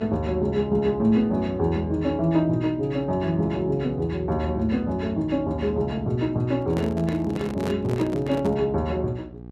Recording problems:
hum; 60 Hz, harmonics up to 840 Hz, SNR 16 dB
microphone handling noise; from 6.5 to 8.5 s; peak -2 dB vs average level

